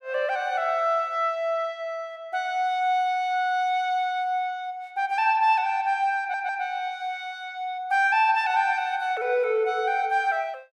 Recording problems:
stutter; at 6 s

